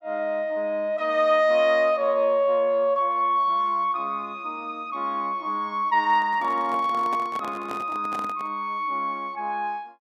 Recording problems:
microphone handling noise; from 6 to 8.5 s; peak -8 dB vs average level

